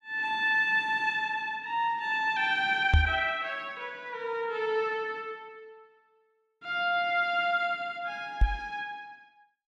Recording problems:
knock on the microphone; at 3 s and at 8.5 s; peak +9 dB vs average level

